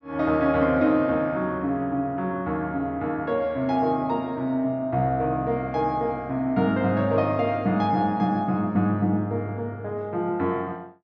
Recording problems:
treble missing; nothing above 8 kHz

